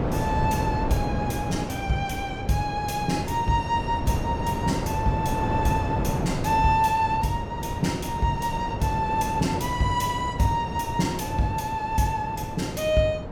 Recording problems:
wind noise; below 490 Hz, SNR 4 dB

